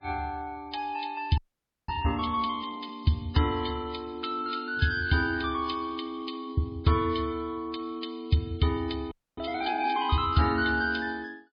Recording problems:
codec artefacts; MP3, log-spectral distance 6 dB, nothing above 5 kHz
audio freezing; at 1.5 s for 0.5 s and at 9 s

